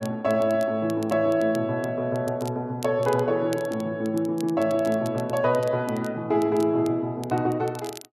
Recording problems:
crackling; vinyl, SNR 22 dB

